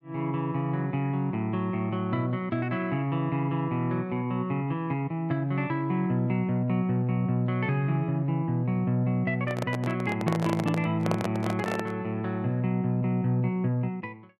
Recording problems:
microphone handling noise; from 9.5 to 12 s; peak +2 dB vs average level

